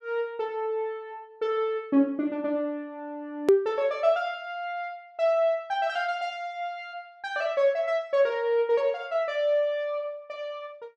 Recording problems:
hard cut with a click; at 3.5 s

